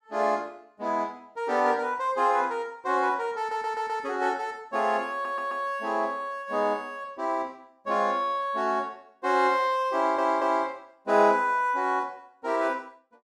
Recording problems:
stutter; at 3.5 s, at 5 s and at 10 s

